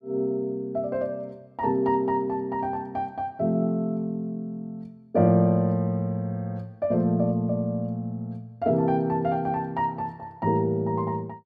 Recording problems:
none

